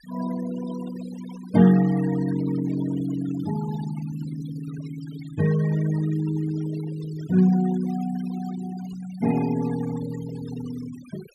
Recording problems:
noise reduction artefacts; signal-to-artefact ratio 15 dB

